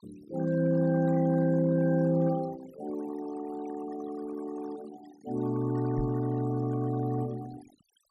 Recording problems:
noise reduction artefacts; signal-to-artefact ratio 19 dB
microphone bump; at 6 s; peak -3 dB vs average level

